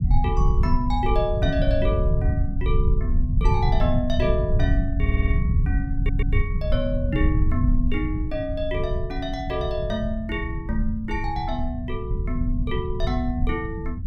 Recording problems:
rumble; below 96 Hz, SNR -3 dB
stutter; at 5 s and at 6 s

